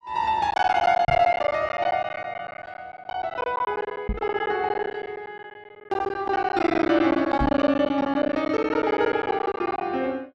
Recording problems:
lost packets; 16% of the sound replaced, filled with silence
knock on the microphone; at 1 s, at 4 s and at 7.5 s; peak 0 dB vs average level

